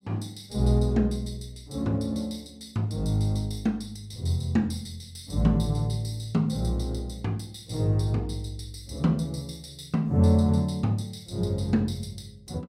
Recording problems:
none

